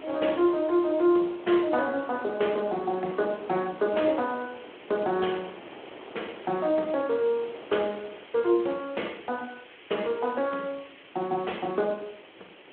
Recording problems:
telephone audio; 260 Hz to 3.3 kHz, Speex
background hiss; SNR 22 dB
wind on the microphone; below 810 Hz, SNR 19 dB

